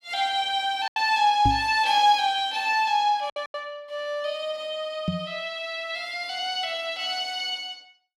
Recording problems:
packet loss; 3% of the sound replaced, filled with silence
knock on the microphone; at 1.5 s and at 5 s; peak +3 dB vs average level

